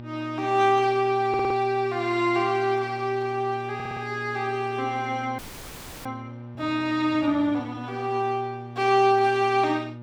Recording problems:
hum; 60 Hz, harmonics up to 1.2 kHz, SNR 15 dB
audio stuttering; at 1.5 s and at 3.5 s
audio freezing; at 5.5 s for 0.5 s

